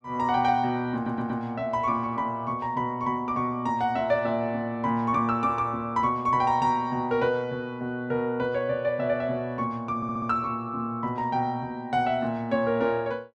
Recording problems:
audio stuttering; at 1 s and at 10 s

